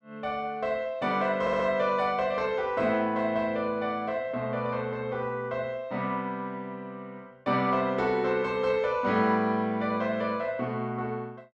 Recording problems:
stutter; at 1.5 s

